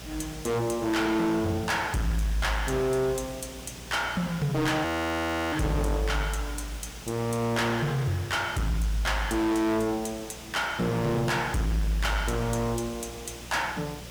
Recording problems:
distorted audio; soft clipping, signal-to-distortion ratio 7 dB
hum; 60 Hz, harmonics up to 720 Hz, SNR 21 dB
background hiss; slope -2 dB per octave, SNR 15 dB
frozen audio; at 5 s for 0.5 s

